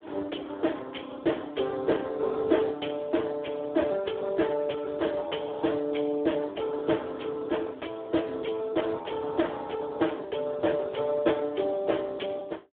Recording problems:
telephone audio; 280 Hz to 3.4 kHz, Speex

